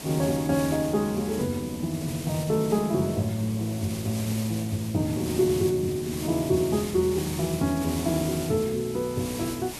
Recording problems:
hiss; SNR 11 dB

